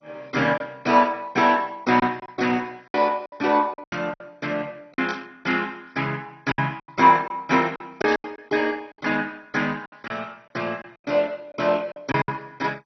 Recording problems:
codec artefacts; MP2, then MP2, log-spectral distance 4 dB, nothing above 5.8 kHz
lost packets; 9% of the sound replaced, filled with silence
burst of static; at 5 s and at 8 s; peak -7 dB vs average level

